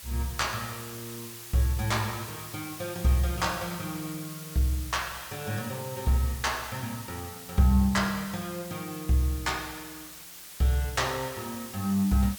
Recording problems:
background hiss; slope +1 dB per octave, SNR 11 dB

